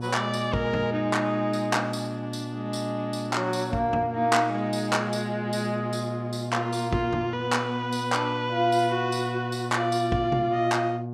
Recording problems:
electrical hum; 60 Hz, harmonics up to 1.1 kHz, SNR 8 dB

